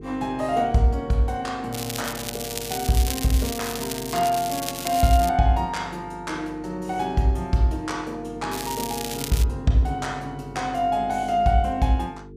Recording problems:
hum; 50 Hz, harmonics up to 450 Hz, SNR 17 dB
crackle; from 1.5 to 5.5 s and at 8.5 s; loose cable, SNR 7 dB

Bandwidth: 15 kHz